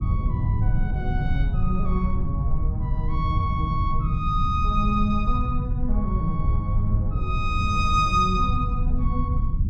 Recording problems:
low-frequency rumble; below 100 Hz, SNR -1 dB

